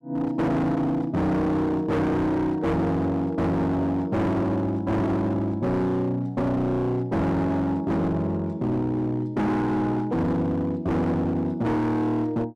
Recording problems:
distorted audio; hard clipping, signal-to-distortion ratio 7 dB

